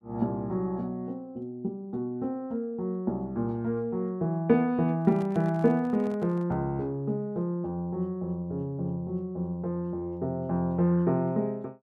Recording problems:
microphone handling noise; from 5 to 6.5 s; peak -11 dB vs average level

